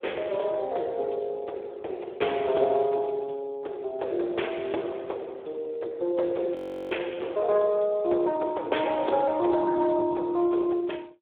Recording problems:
phone line; 300 Hz to 3.5 kHz, Speex
audio freezing; at 6.5 s

